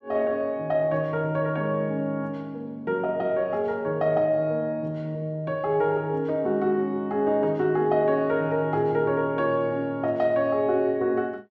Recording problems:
none

